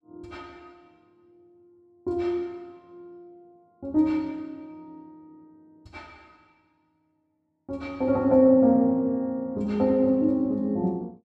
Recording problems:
none

